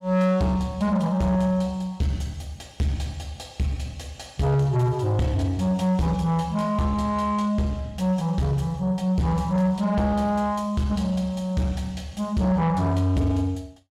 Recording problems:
distorted audio; soft clipping, signal-to-distortion ratio 10 dB

